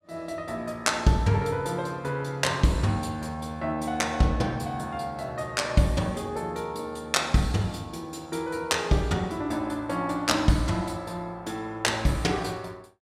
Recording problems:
none

